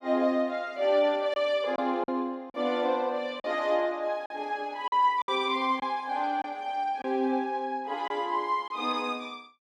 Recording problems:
lost packets; 4% of the sound replaced, filled with silence

